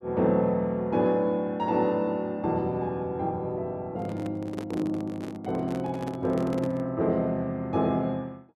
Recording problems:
microphone handling noise; from 4 to 7 s; peak -4 dB vs average level

